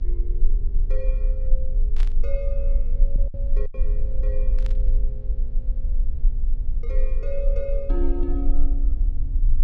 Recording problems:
hum; 60 Hz, harmonics up to 840 Hz, SNR 12 dB
low-frequency rumble; below 36 Hz, strongest tone 20 Hz, SNR -10 dB
packet loss; 1.9% of the sound replaced, filled with silence
burst of static; at 2 s and at 4.5 s; peak -2 dB vs average level

